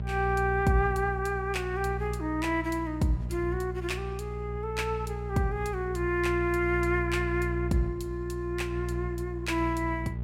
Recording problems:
hum; 60 Hz, harmonics up to 420 Hz, SNR 5 dB

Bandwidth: 16 kHz